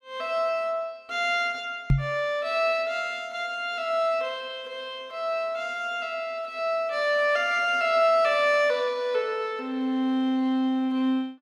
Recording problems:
knock on the microphone; at 2 s; peak +7 dB vs average level

